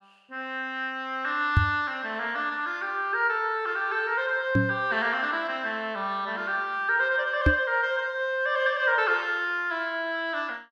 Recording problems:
microphone thump; at 1.5 s, at 4.5 s and at 7.5 s; peak +8 dB vs average level

